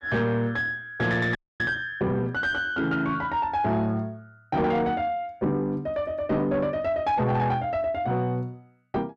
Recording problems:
distortion; soft clipping, signal-to-distortion ratio 11 dB
frozen audio; at 1.5 s

